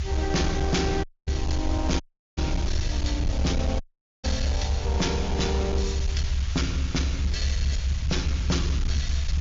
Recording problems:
treble missing; nothing above 6.9 kHz
lossy compression; MP3, log-spectral distance 5 dB
distortion; hard clipping, signal-to-distortion ratio 11 dB
background hiss; slope +2 dB per octave, SNR 10 dB
rumble; below 74 Hz, strongest tone 68 Hz, SNR -2 dB
dropout; at 1 s, at 2 s and at 4 s

